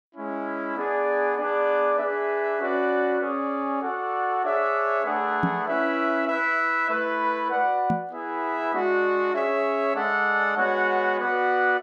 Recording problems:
microphone thump; at 5.5 s and at 8 s; peak +3 dB vs average level

